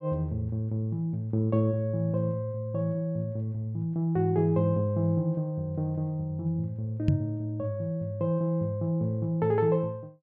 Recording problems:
knock on the microphone; at 7 s; peak +8 dB vs average level

